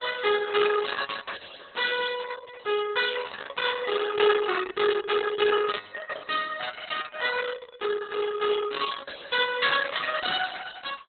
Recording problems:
lossy compression; Opus, log-spectral distance 6 dB, nothing above 4 kHz

